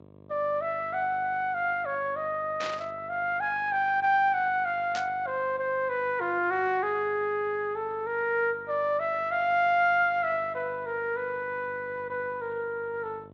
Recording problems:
lossy compression; Speex, log-spectral distance 2 dB
hum; 50 Hz, harmonics up to 1.2 kHz, SNR 24 dB
burst of static; at 2.5 s and at 5 s; peak -4 dB vs average level

